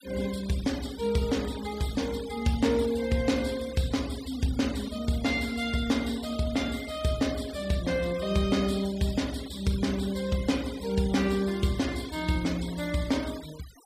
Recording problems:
noise reduction artefacts; signal-to-artefact ratio 16 dB

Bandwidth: 15 kHz